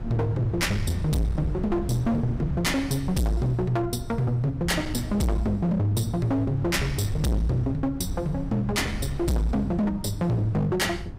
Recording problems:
distorted audio; hard clipping, signal-to-distortion ratio 7 dB
rumble; below 140 Hz, SNR 9 dB

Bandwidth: 15.5 kHz